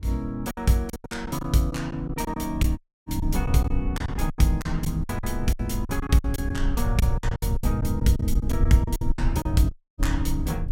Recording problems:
low-frequency rumble; below 84 Hz, SNR 3 dB
lost packets; 14% of the sound replaced, filled with silence
audio cutting out; at 3 s and at 9.5 s

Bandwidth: 16 kHz